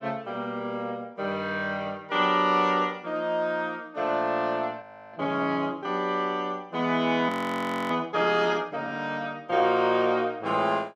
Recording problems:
audio freezing; at 5 s and at 7.5 s for 0.5 s

